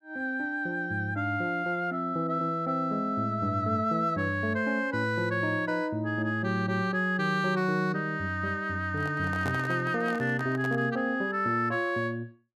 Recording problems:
microphone handling noise; from 9 to 11 s; peak -4 dB vs average level

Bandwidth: 15 kHz